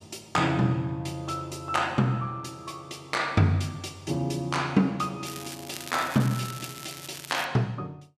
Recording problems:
crackle; from 5.5 to 7.5 s; loose cable, SNR 12 dB

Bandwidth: 14 kHz